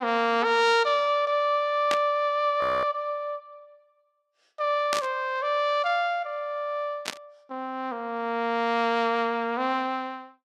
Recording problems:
static burst; at 2 s, at 5 s and at 7 s; peak +1 dB vs average level
audio freezing; at 2.5 s

